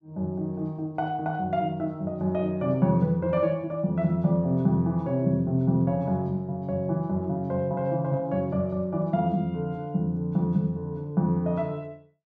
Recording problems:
none

